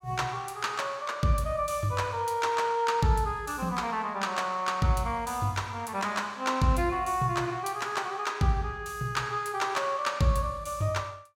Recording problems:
none

